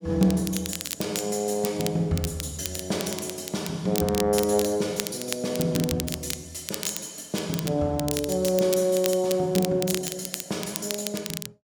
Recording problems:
crackle; vinyl, SNR 8 dB

